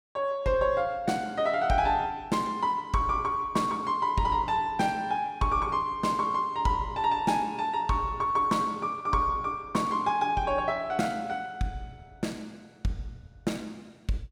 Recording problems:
none

